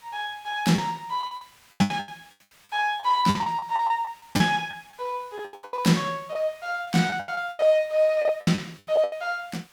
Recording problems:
background hiss; SNR 28 dB
lost packets; 17% of the sound replaced, filled with the last packet

